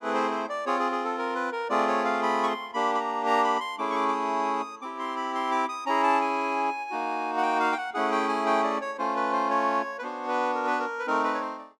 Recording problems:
none

